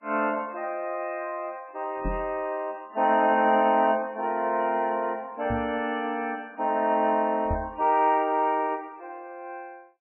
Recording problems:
lossy codec; MP3, log-spectral distance 3 dB, nothing above 2.4 kHz
microphone thump; at 2 s, at 5.5 s and at 7.5 s; peak -2 dB vs average level

